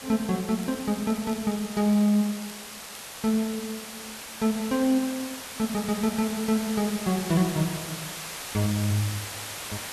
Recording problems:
hiss; slope -1 dB per octave, SNR 9 dB
crackle; until 3.5 s; loose cable, SNR 21 dB

